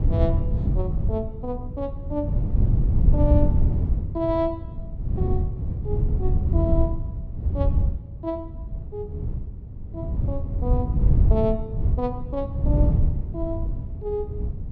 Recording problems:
wind on the microphone; below 110 Hz, SNR -5 dB

